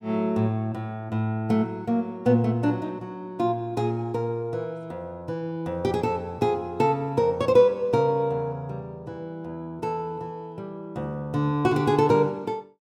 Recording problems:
none

